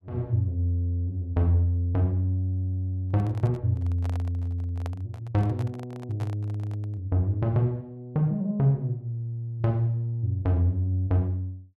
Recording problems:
microphone handling noise; from 3 to 7 s; peak -9 dB vs average level

